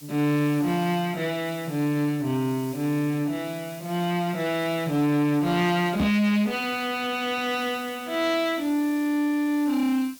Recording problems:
distorted audio; soft clipping, signal-to-distortion ratio 12 dB
hiss; SNR 20 dB
microphone thump; at 6 s; peak +4 dB vs average level

